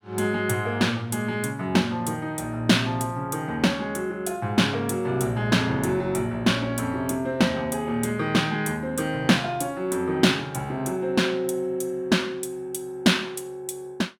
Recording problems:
none

